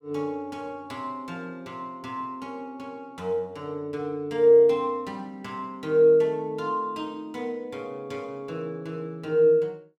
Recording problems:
none

